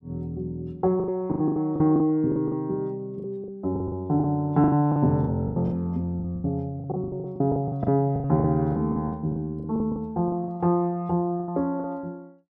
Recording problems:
lost packets; 16% of the sound replaced, filled with the last packet

